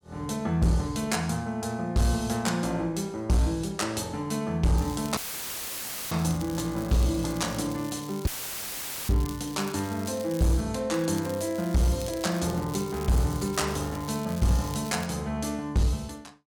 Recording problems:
distortion; hard clipping, signal-to-distortion ratio 12 dB
crackling; from 5 to 11 s and from 11 to 15 s; loose cable, SNR 16 dB
dropout; at 5 s for 1 s and at 8.5 s for 1 s; filled with static

